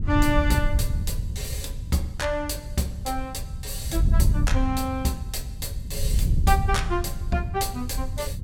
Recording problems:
wind noise; below 94 Hz, SNR 0 dB

